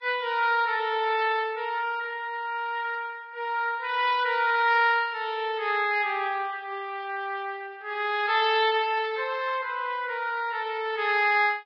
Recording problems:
codec artefacts; Vorbis, log-spectral distance 2 dB

